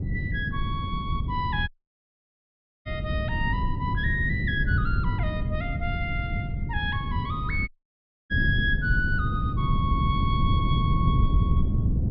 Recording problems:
treble missing; nothing above 5.5 kHz
wind noise; below 150 Hz, SNR -3 dB
audio cutting out; at 1.5 s for 1 s and at 7.5 s for 0.5 s

